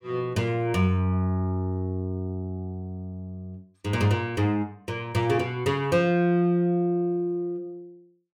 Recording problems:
none

